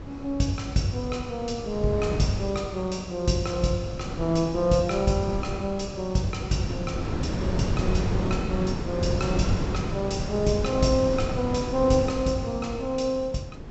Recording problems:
treble missing; nothing above 7.7 kHz
wind noise; below 310 Hz, SNR 5 dB

